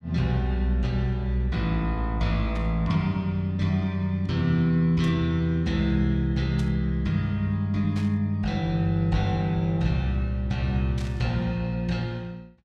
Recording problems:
static burst; 5 times, first at 2.5 s; peak -12 dB vs average level

